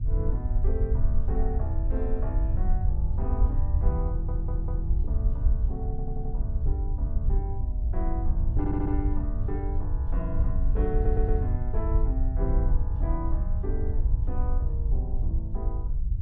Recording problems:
low-frequency rumble; below 70 Hz, SNR -8 dB
audio stuttering; 4 times, first at 4 s

